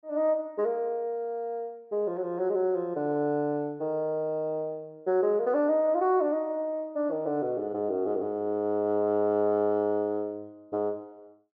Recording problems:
none

